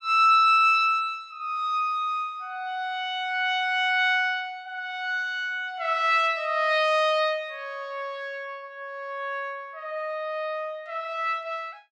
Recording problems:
none

